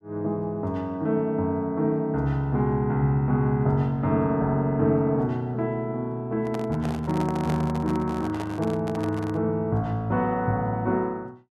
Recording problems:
microphone handling noise; from 6.5 to 9.5 s; peak -4 dB vs average level

